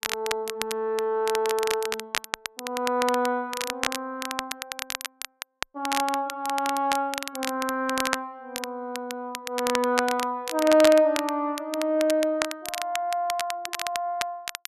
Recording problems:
crackle; vinyl, SNR 6 dB

